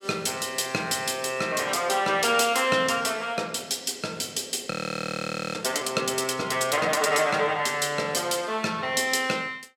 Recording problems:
frozen audio; at 4.5 s for 1 s

